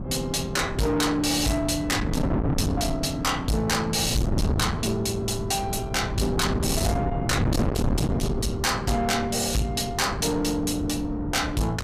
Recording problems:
distorted audio; soft clipping, signal-to-distortion ratio 6 dB
wind noise; below 330 Hz, SNR 4 dB

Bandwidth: 15 kHz